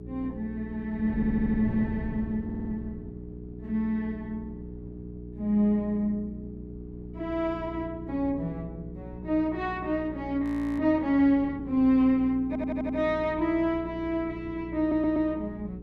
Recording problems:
hum; 60 Hz, harmonics up to 420 Hz, SNR 13 dB
wind noise; below 230 Hz, SNR 17 dB
stutter; 4 times, first at 1 s
audio freezing; at 10 s

